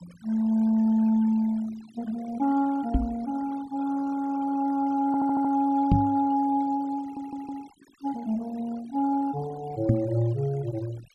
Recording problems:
denoising artefacts; signal-to-artefact ratio 22 dB
knock on the microphone; at 3 s, at 6 s and at 10 s; peak +8 dB vs average level
stutter; at 5 s and at 7 s

